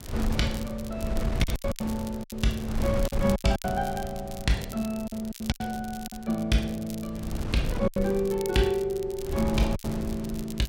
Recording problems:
wind noise; below 150 Hz, SNR 5 dB
crackling; vinyl, SNR 16 dB
lost packets; 8% of the sound replaced, filled with silence

